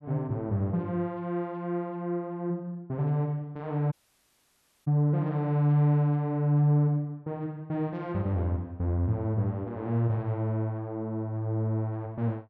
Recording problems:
dropout; at 4 s for 1 s

